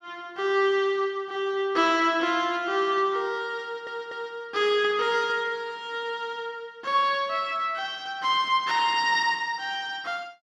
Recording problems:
audio stuttering; at 3.5 s

